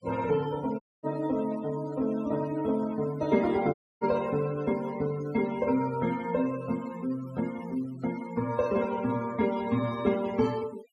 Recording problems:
denoising artefacts; signal-to-artefact ratio 19 dB
dropout; at 1 s and at 3.5 s

